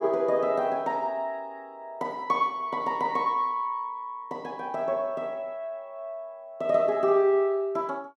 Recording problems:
none

